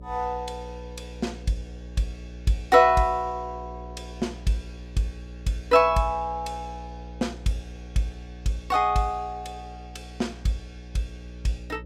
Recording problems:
hum; 60 Hz, harmonics up to 600 Hz, SNR 15 dB

